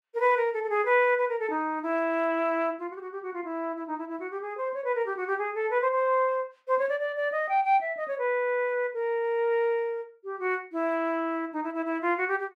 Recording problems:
none

